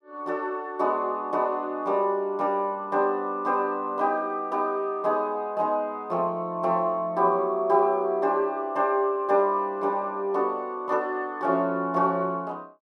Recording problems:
none

